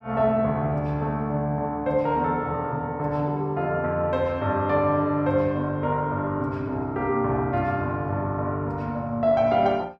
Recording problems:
none

